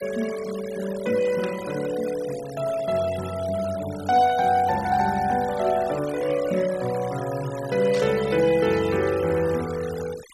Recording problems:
noise reduction artefacts; signal-to-artefact ratio 16 dB
burst of static; at 1.5 s and at 8 s; peak -10 dB vs average level

